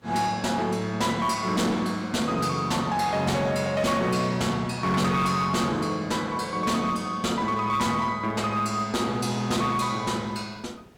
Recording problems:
distorted audio; hard clipping, uneven, signal-to-distortion ratio 11 dB
hiss; slope -6 dB per octave, SNR 29 dB

